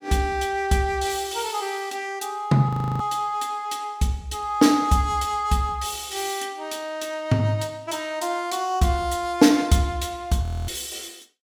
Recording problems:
audio freezing; at 2.5 s and at 10 s

